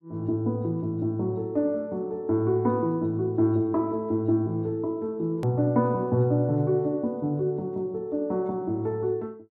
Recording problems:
click at an edit; at 5.5 s

